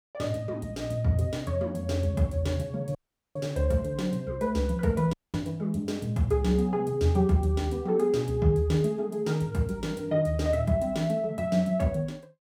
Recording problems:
audio cutting out; at 3 s and at 5 s

